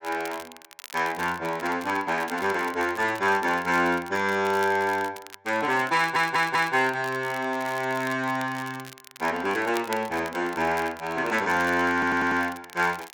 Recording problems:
crackle; vinyl, SNR 18 dB
stutter; at 6 s and at 12 s

